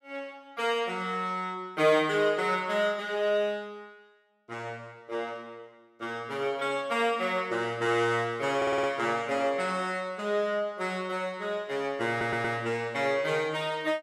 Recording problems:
stutter; at 8.5 s and at 12 s

